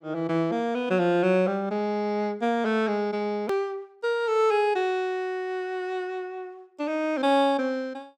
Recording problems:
edit click; at 3.5 s

